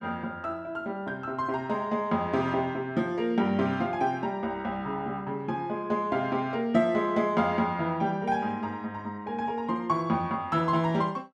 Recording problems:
none

